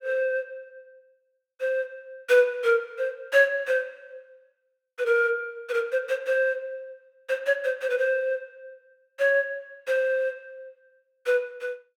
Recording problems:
none

